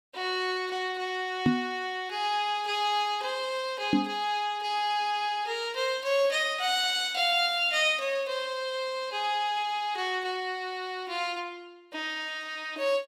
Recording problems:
microphone bump; at 1.5 s and at 4 s; peak +7 dB vs average level

